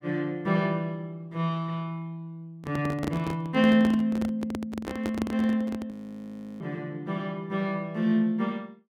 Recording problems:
microphone handling noise; from 2.5 to 6 s; peak 0 dB vs average level
audio freezing; at 6 s for 0.5 s

